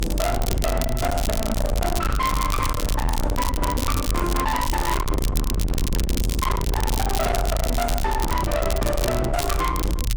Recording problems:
distorted audio; hard clipping, signal-to-distortion ratio 6 dB
low-frequency rumble; below 150 Hz, SNR 1 dB
crackle; vinyl, SNR 7 dB

